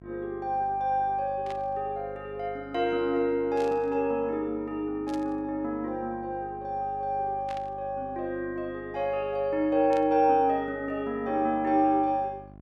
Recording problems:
hum; 50 Hz, harmonics up to 1.1 kHz, SNR 20 dB
static burst; 5 times, first at 1.5 s; peak -12 dB vs average level

